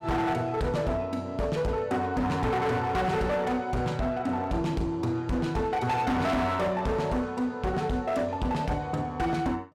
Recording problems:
distorted audio; hard clipping, signal-to-distortion ratio 7 dB

